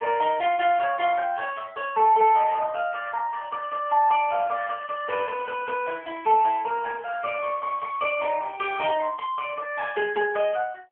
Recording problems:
telephone audio; 340 Hz to 2.9 kHz, AMR-NB
crackling; from 4.5 to 8 s; loose cable, SNR 28 dB

